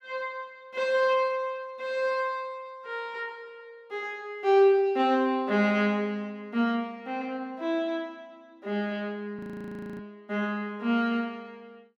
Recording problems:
audio freezing; at 9.5 s for 0.5 s

